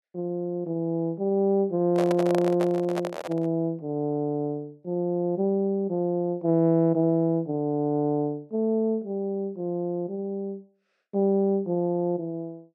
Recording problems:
microphone handling noise; from 2 to 3.5 s; peak 0 dB vs average level

